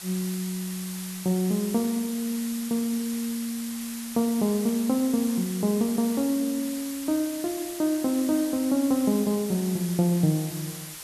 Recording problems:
hiss; slope +2 dB per octave, SNR 10 dB

